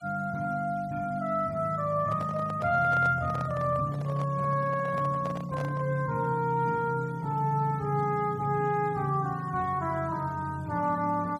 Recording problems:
noise reduction artefacts; signal-to-artefact ratio 28 dB
microphone handling noise; from 2 to 6 s; peak -8 dB vs average level

